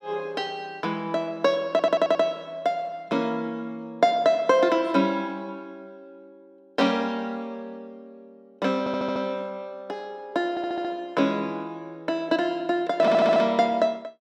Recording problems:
stutter; 4 times, first at 1.5 s

